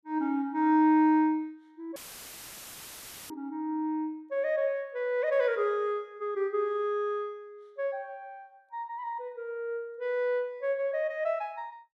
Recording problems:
dropout; at 2 s for 1.5 s; filled with static

